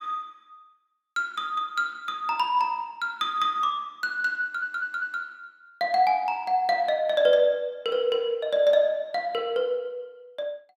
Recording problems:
stutter; at 4.5 s

